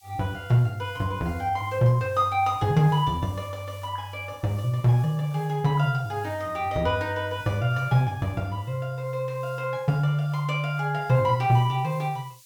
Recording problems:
background hiss; SNR 28 dB

